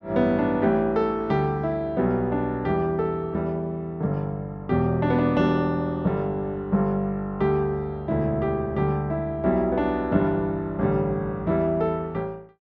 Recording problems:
none

